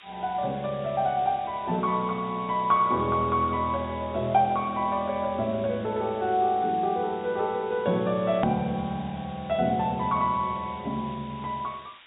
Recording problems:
treble cut off; nothing above 4 kHz
hiss; SNR 22 dB
click at an edit; at 8.5 s

